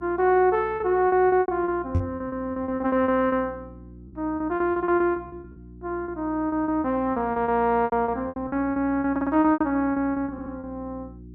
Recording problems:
electrical hum; 60 Hz, harmonics up to 360 Hz, SNR 20 dB
lost packets; 18% of the sound replaced, filled with repeated pitch periods
knock on the microphone; at 2 s; peak +3 dB vs average level
stutter; at 9 s and at 10 s

